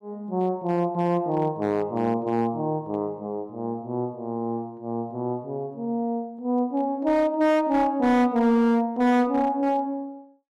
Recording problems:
distortion; hard clipping, signal-to-distortion ratio 11 dB

